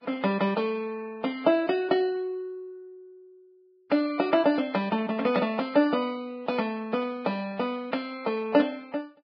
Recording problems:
lossy compression; Vorbis, log-spectral distance 2 dB, nothing above 4.8 kHz

